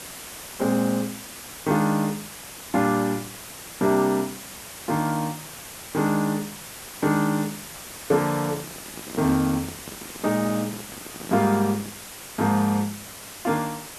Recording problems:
hiss; slope -2 dB per octave, SNR 12 dB
handling noise; from 8.5 to 12 s; peak -8 dB vs average level

